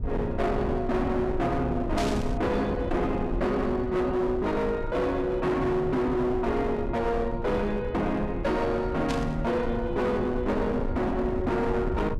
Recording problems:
distorted audio; hard clipping, uneven, signal-to-distortion ratio 8 dB
low-frequency rumble; below 180 Hz, SNR 8 dB
burst of static; at 2 s and at 9 s; peak -4 dB vs average level

